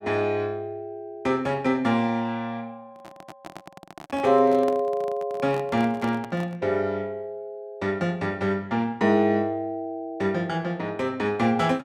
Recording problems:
microphone handling noise; from 3 to 6.5 s; peak -6 dB vs average level

